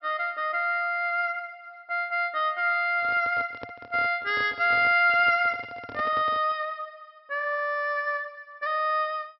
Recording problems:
low-pass filter; nothing above 5.5 kHz
handling noise; from 3 to 6.5 s; peak -10 dB vs average level

